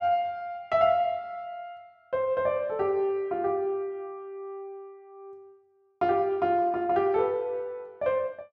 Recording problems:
none

